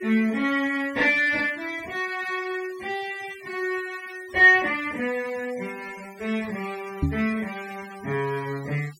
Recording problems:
noise reduction artefacts; signal-to-artefact ratio 22 dB
knock on the microphone; at 7 s; peak +4 dB vs average level

